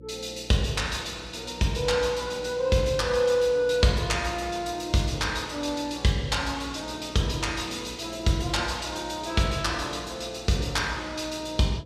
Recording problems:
electrical hum; 60 Hz, harmonics up to 540 Hz, SNR 20 dB

